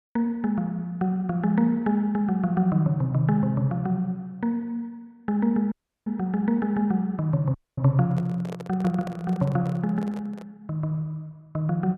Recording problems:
dropout; at 5.5 s and at 7.5 s
microphone handling noise; from 8 to 11 s; peak -7 dB vs average level

